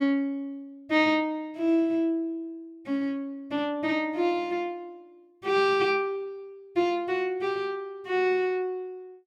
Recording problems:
none

